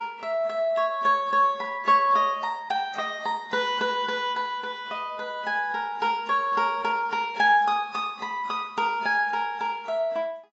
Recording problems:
lossy compression; AAC, log-spectral distance 2 dB, nothing above 7.3 kHz

